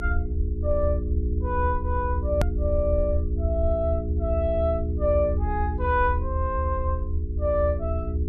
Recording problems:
hum; 60 Hz, harmonics up to 420 Hz, SNR 6 dB
low-frequency rumble; below 76 Hz, SNR 1 dB
click at an edit; at 2.5 s

